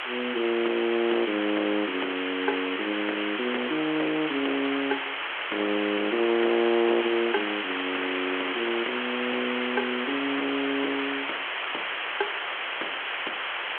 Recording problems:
phone line; 370 Hz to 3.3 kHz, G.726
distorted audio; soft clipping, signal-to-distortion ratio 13 dB
background hiss; SNR 3 dB

